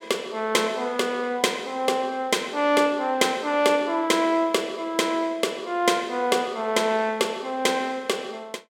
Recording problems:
none

